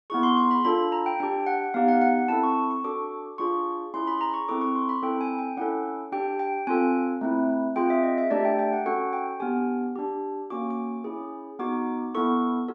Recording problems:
none

